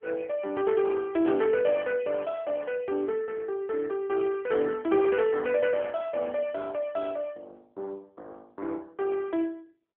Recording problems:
telephone audio; 260 Hz to 3.3 kHz, AMR-NB

